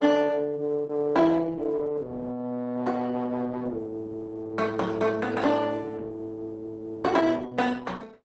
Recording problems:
lossy codec; Opus, log-spectral distance 3 dB, nothing above 8 kHz

